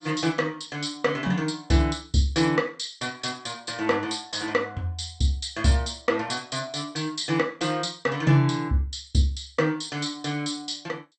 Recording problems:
codec artefacts; MP2, log-spectral distance 6 dB, nothing above 8.5 kHz

